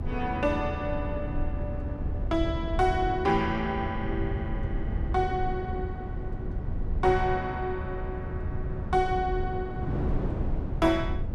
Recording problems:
low-frequency rumble; below 82 Hz, SNR 6 dB
wind on the microphone; below 270 Hz, SNR 7 dB

